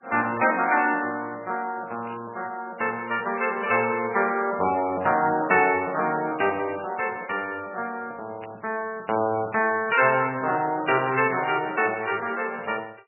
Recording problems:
lossy codec; MP3, log-spectral distance 4 dB, nothing above 2.4 kHz
burst of static; 4 times, first at 2 s; peak -12 dB vs average level

